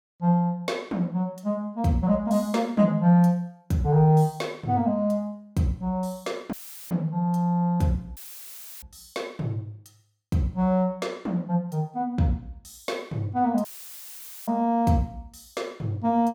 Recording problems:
dropout; at 6.5 s, at 8 s for 0.5 s and at 14 s for 1 s; filled with static

